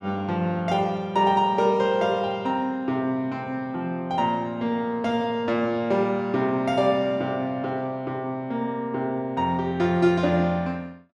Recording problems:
none

